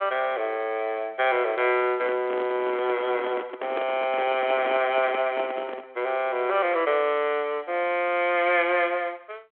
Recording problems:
telephone audio; 300 Hz to 3.5 kHz, G.726
handling noise; from 2 to 6 s; peak -3 dB vs average level

